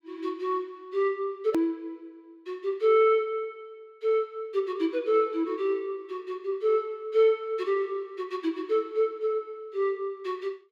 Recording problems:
hard cut with a click; at 1.5 s

